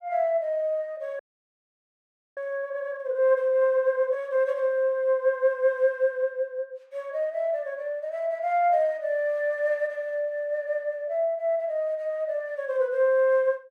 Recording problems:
frozen audio; at 1 s for 1 s

